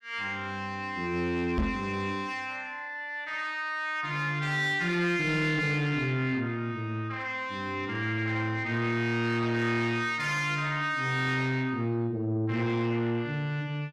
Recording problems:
distorted audio; soft clipping, signal-to-distortion ratio 11 dB
microphone thump; at 1.5 s; peak +4 dB vs average level

